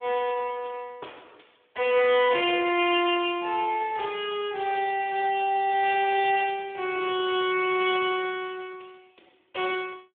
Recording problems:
phone line; 300 Hz to 3.7 kHz, Speex

